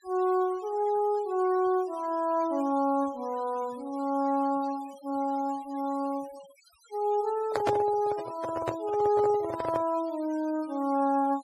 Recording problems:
denoising artefacts; signal-to-artefact ratio 22 dB
microphone handling noise; from 7.5 to 10 s; peak +4 dB vs average level

